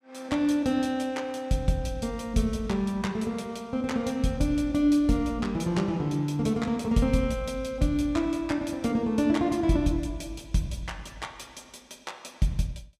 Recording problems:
none

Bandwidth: 15.5 kHz